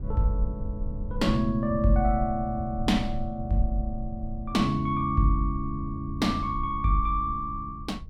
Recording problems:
rumble; below 78 Hz, SNR 10 dB

